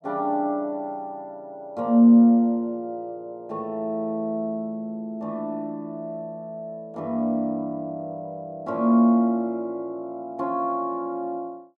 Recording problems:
none

